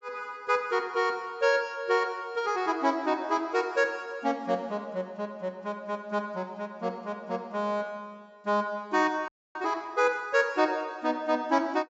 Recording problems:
treble missing; nothing above 8 kHz
audio freezing; at 9.5 s

